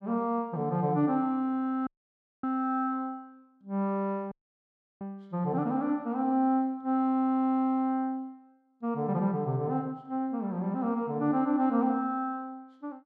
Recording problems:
dropout; at 2 s for 0.5 s and at 4.5 s for 0.5 s

